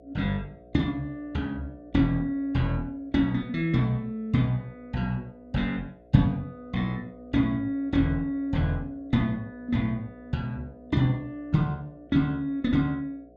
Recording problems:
hum; 60 Hz, harmonics up to 720 Hz, SNR 24 dB

